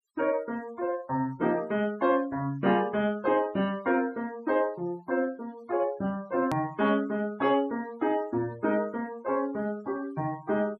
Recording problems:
noise reduction artefacts; signal-to-artefact ratio 24 dB
edit click; at 6.5 s

